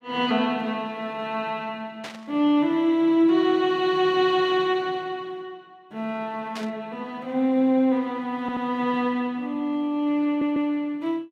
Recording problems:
burst of static; at 2 s and at 6.5 s; peak -8 dB vs average level
stutter; at 8.5 s and at 10 s

